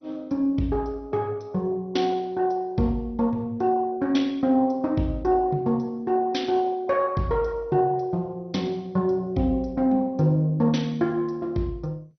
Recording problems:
codec artefacts; MP2, log-spectral distance 2 dB, nothing above 6 kHz

